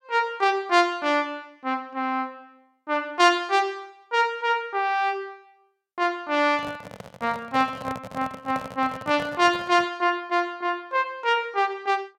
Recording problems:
handling noise; from 6.5 to 10 s; peak -6 dB vs average level

